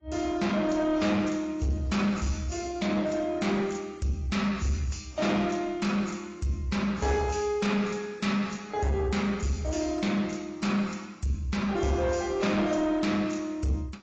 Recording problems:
codec artefacts; AAC, log-spectral distance 3 dB, nothing above 7.3 kHz
distortion; soft clipping, signal-to-distortion ratio 10 dB

